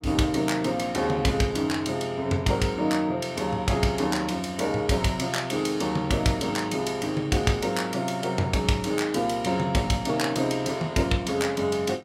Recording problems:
none

